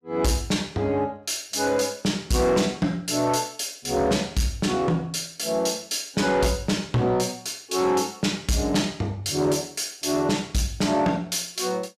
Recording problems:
distortion; soft clipping, signal-to-distortion ratio 12 dB

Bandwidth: 14.5 kHz